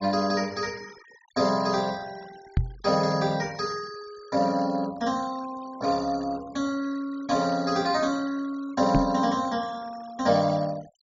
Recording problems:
low-pass filter; nothing above 7.5 kHz
denoising artefacts; signal-to-artefact ratio 21 dB
knock on the microphone; at 2.5 s and at 9 s; peak +6 dB vs average level

